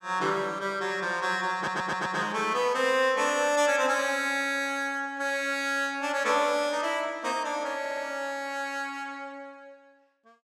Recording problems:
stutter; at 1.5 s and at 8 s

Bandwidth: 16 kHz